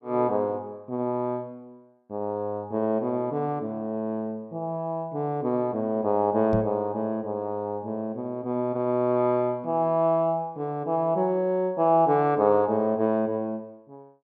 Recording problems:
knock on the microphone; at 6.5 s; peak +2 dB vs average level

